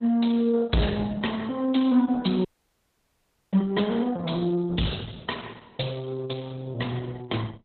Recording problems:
lossy compression; Opus, log-spectral distance 6 dB, nothing above 4.1 kHz
distortion; hard clipping, signal-to-distortion ratio 10 dB
audio cutting out; at 2.5 s for 1 s

